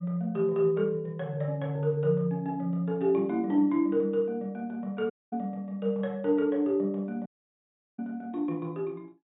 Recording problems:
low-pass filter; nothing above 4 kHz
dropout; at 5 s and at 7.5 s for 0.5 s

